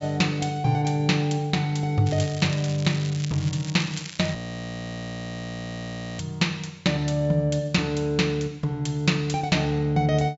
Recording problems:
low-pass filter; nothing above 8 kHz
crackle; from 2 to 4.5 s; loose cable, SNR 15 dB
frozen audio; at 4.5 s for 2 s

